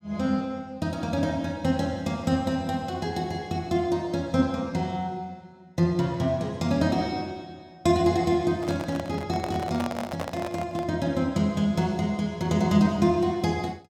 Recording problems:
microphone handling noise; from 8.5 to 11 s; peak -2 dB vs average level

